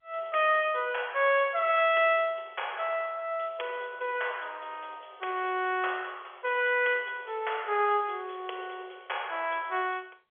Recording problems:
phone line; 320 Hz to 3.4 kHz, G.711

